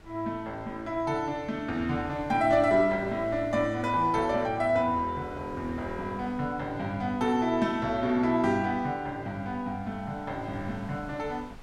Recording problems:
wind on the microphone; below 640 Hz, SNR 21 dB

